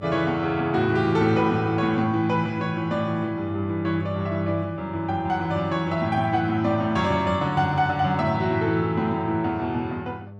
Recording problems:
hum; 50 Hz, harmonics up to 900 Hz, SNR 18 dB

